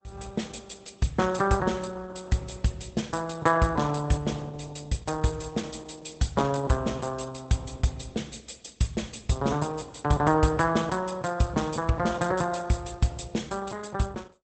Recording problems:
lossy codec; Opus, log-spectral distance 8 dB, nothing above 8.2 kHz

